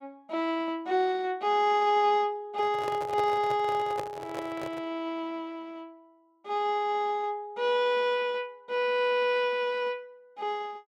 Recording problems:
microphone handling noise; from 2.5 to 5 s; peak -3 dB vs average level

